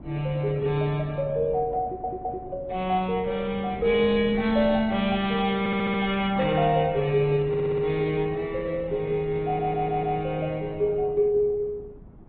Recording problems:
low-pass filter; nothing above 4 kHz
lossy codec; Opus, log-spectral distance 2 dB
wind on the microphone; below 270 Hz, SNR 18 dB
audio stuttering; 4 times, first at 2 s

